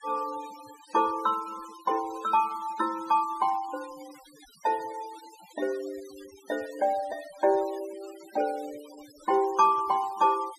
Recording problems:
noise reduction artefacts; signal-to-artefact ratio 20 dB

